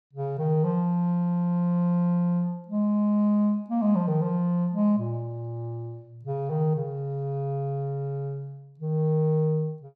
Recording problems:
none

